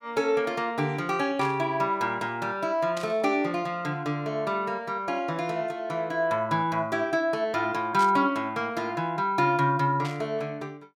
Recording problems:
burst of static; 4 times, first at 1.5 s; peak -7 dB vs average level

